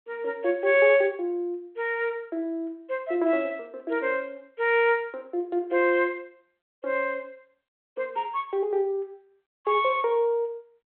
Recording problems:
telephone audio; 300 Hz to 3.7 kHz, G.726

